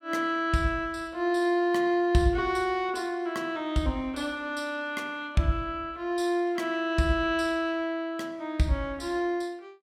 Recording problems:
none

